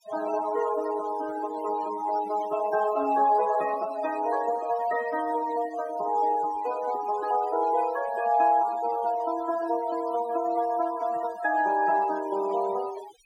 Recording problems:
noise reduction artefacts; signal-to-artefact ratio 15 dB

